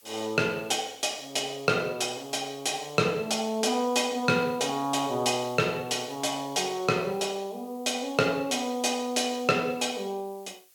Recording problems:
background hiss; SNR 26 dB

